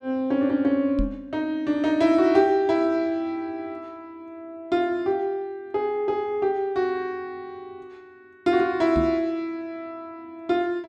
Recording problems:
knock on the microphone; at 1 s and at 9 s; peak -1 dB vs average level

